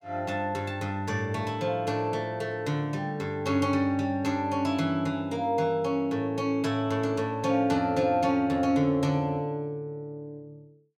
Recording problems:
none

